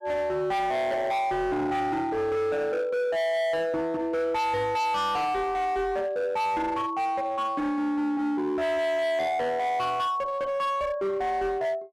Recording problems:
distortion; hard clipping, signal-to-distortion ratio 8 dB

